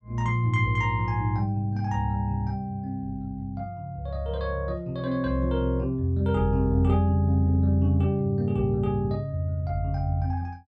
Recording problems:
none

